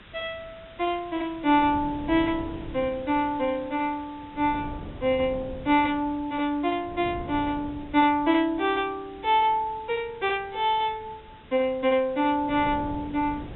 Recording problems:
treble cut off; nothing above 3.8 kHz
hiss; SNR 25 dB
wind noise; below 340 Hz, SNR 17 dB

